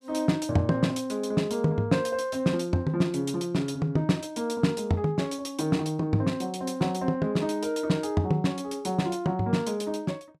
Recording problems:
none

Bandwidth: 14.5 kHz